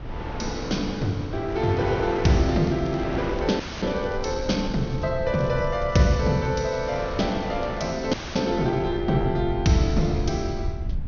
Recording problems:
low-pass filter; nothing above 6.4 kHz
rumble; below 92 Hz, SNR 12 dB
wind noise; below 850 Hz, SNR 9 dB
crackling; from 1.5 to 5 s and from 5.5 to 8 s; loose cable, SNR 27 dB
audio freezing; at 3.5 s and at 8 s

